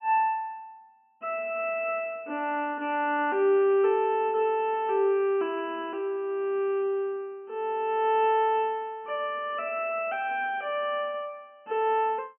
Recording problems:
treble missing; nothing above 3 kHz

